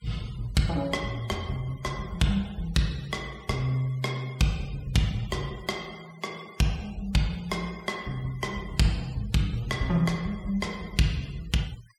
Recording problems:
noise reduction artefacts; signal-to-artefact ratio 21 dB

